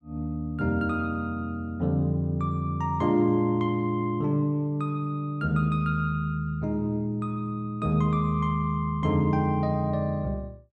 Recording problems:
none

